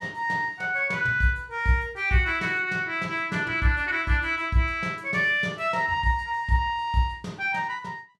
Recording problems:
none

